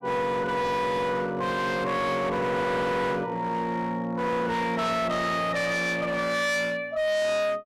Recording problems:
distorted audio; hard clipping, signal-to-distortion ratio 6 dB

